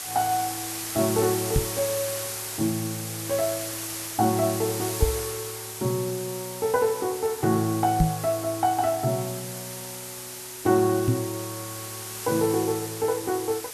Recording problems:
hiss; slope 0 dB per octave, SNR 6 dB
microphone thump; 4 times, first at 1.5 s; peak +8 dB vs average level

